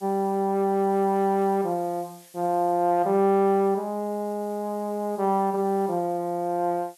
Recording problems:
background hiss; slope +4 dB per octave, SNR 27 dB

